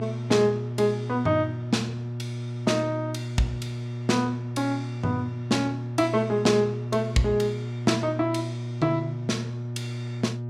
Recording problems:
hum; 60 Hz, harmonics up to 600 Hz, SNR 6 dB

